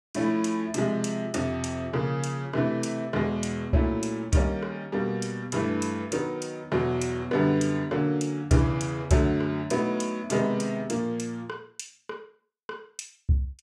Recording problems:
none

